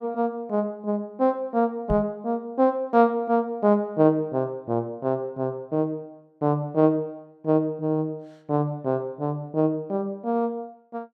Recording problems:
microphone thump; at 2 s; peak +1 dB vs average level

